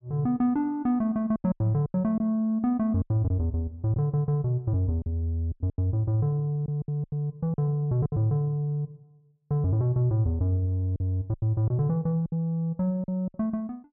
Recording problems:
packet loss; 9% of the sound replaced, filled with silence

